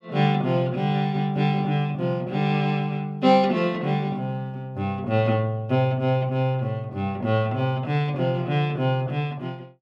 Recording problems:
none

